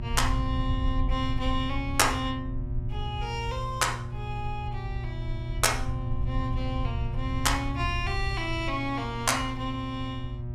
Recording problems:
hum; 60 Hz, harmonics up to 720 Hz, SNR 7 dB
rumble; below 80 Hz, SNR 5 dB

